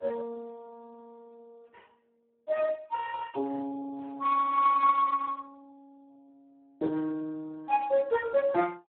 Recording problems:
phone line; 280 Hz to 2.1 kHz, Speex

